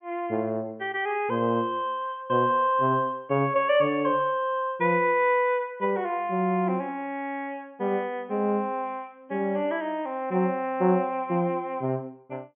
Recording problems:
low-pass filter; nothing above 3.2 kHz

